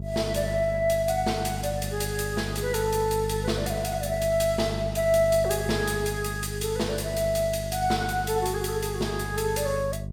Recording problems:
hum; 50 Hz, harmonics up to 450 Hz, SNR 7 dB

